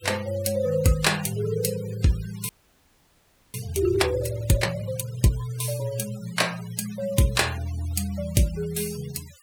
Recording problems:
denoising artefacts; signal-to-artefact ratio 17 dB
frozen audio; at 2.5 s for 1 s

